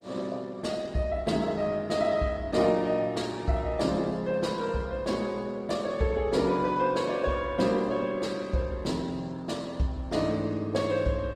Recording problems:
lossy compression; Opus, log-spectral distance 3 dB, nothing above 16.6 kHz

